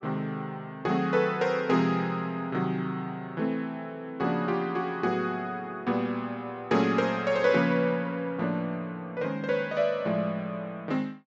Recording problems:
treble missing; nothing above 7.8 kHz

